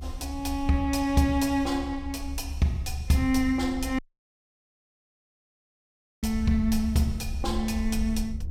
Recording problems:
rumble; below 72 Hz, SNR 9 dB
dropout; at 4 s for 2 s

